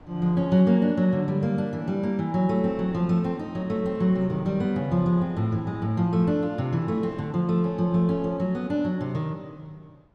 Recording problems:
wind noise; below 590 Hz, SNR 25 dB

